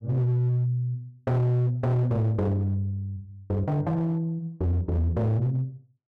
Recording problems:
distorted audio; hard clipping, signal-to-distortion ratio 11 dB

